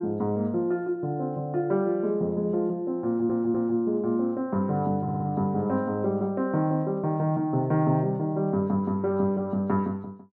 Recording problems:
stutter; at 3 s and at 5 s

